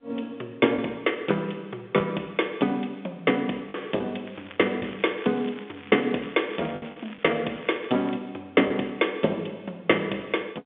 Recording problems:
phone line; 280 Hz to 3.6 kHz, G.711
lost packets; 2% of the sound replaced, filled with the last packet
crackle; from 4.5 to 8 s; loose cable, SNR 19 dB

